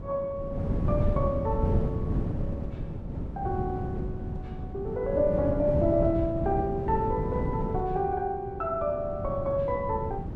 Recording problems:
wind on the microphone; below 220 Hz, SNR 3 dB

